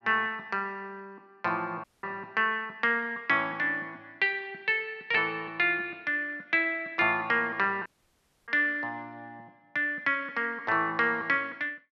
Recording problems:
audio cutting out; at 2 s and at 8 s for 0.5 s

